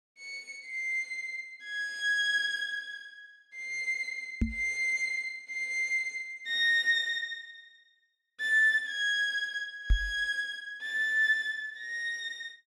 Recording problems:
knock on the microphone; at 4.5 s and at 10 s; peak +6 dB vs average level

